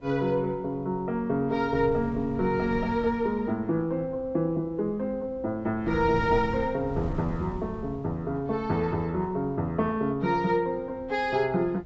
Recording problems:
treble cut off; nothing above 7.6 kHz
wind noise; below 200 Hz, SNR 15 dB

